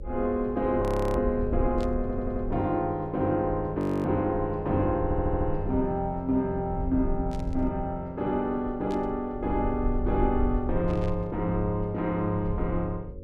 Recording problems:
hum; 50 Hz, harmonics up to 550 Hz, SNR 19 dB
low-frequency rumble; below 78 Hz, SNR 8 dB
frozen audio; at 1 s and at 4 s
burst of static; 4 times, first at 2 s; peak -14 dB vs average level
stutter; at 2 s and at 5 s

